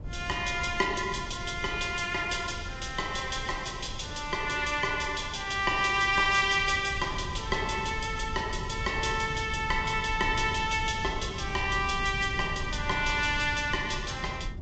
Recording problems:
treble cut off; nothing above 7.6 kHz
codec artefacts; MP3, log-spectral distance 3 dB
low-frequency rumble; below 140 Hz, SNR 11 dB

